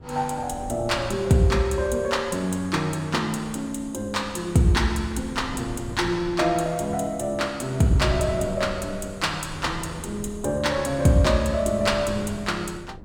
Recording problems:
wind noise; below 260 Hz, SNR 15 dB

